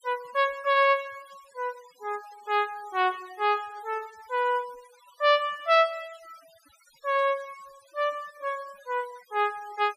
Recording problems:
denoising artefacts; signal-to-artefact ratio 23 dB

